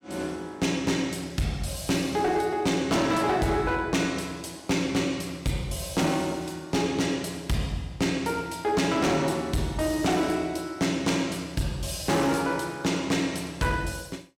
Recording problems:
distorted audio; hard clipping, signal-to-distortion ratio 10 dB

